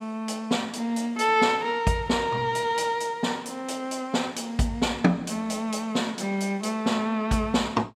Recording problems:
none

